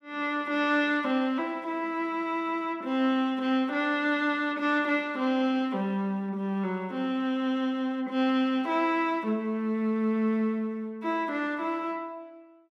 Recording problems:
none

